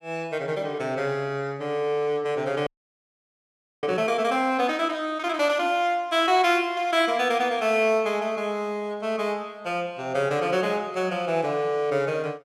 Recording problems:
frozen audio; at 2.5 s for 1 s

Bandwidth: 14.5 kHz